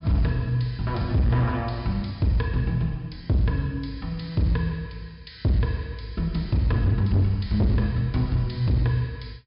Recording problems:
treble cut off; nothing above 5.5 kHz
distorted audio; hard clipping, signal-to-distortion ratio 10 dB

